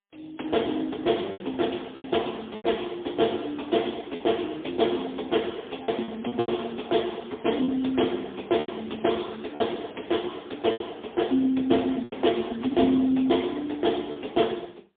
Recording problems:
phone line; 220 Hz to 3.5 kHz, AMR-NB, then MP3
lost packets; 6% of the sound replaced, filled with repeated pitch periods

